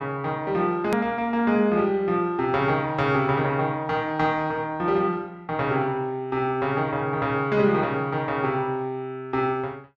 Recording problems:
click at an edit; at 1 s

